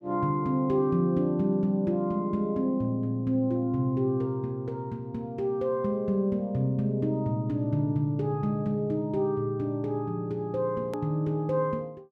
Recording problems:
edit click; at 11 s

